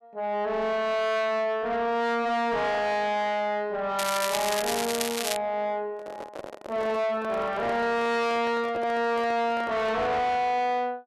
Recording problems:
distortion; soft clipping, signal-to-distortion ratio 6 dB
crackling; from 4 to 5.5 s; loose cable, SNR 4 dB
microphone handling noise; from 6 to 10 s; peak -5 dB vs average level

